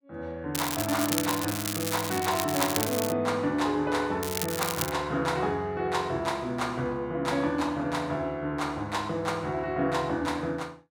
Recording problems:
crackle; from 0.5 to 3 s and at 4 s; loose cable, SNR 3 dB

